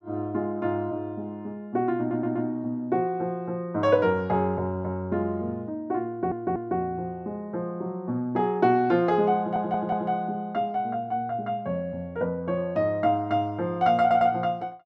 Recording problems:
stutter; 4 times, first at 2 s

